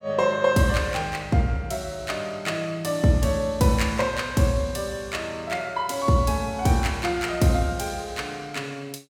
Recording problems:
none

